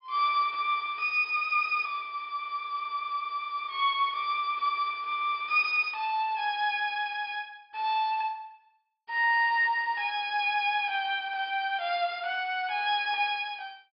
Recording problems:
treble cut off; nothing above 5.5 kHz

